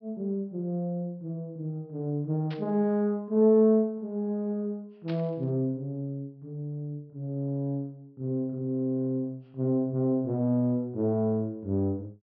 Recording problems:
low-pass filter; nothing above 5.5 kHz
static burst; at 2.5 s and at 5 s; peak -11 dB vs average level

